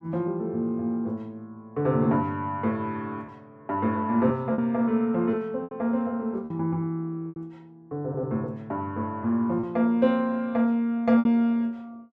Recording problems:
packet loss; 4% of the sound replaced, filled with repeated pitch periods

